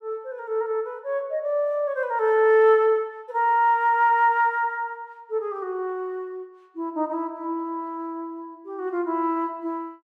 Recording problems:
none

